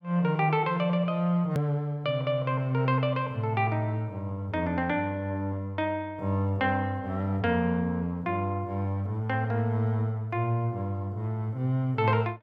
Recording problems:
hard cut with a click; at 1.5 s

